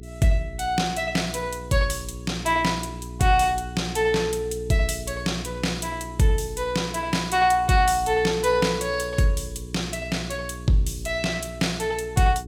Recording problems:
hum; 60 Hz, harmonics up to 420 Hz, SNR 14 dB

